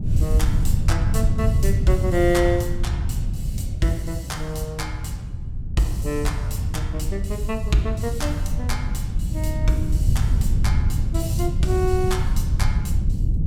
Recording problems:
wind on the microphone; below 110 Hz, SNR -2 dB

